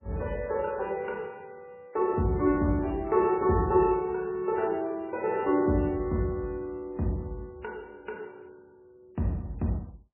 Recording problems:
lossy compression; MP3, log-spectral distance 2 dB, nothing above 2.8 kHz

